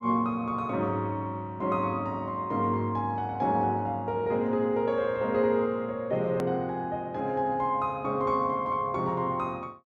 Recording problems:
hard cut with a click; at 6.5 s

